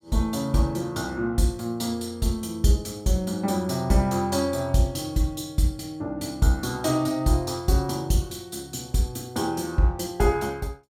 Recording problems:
none

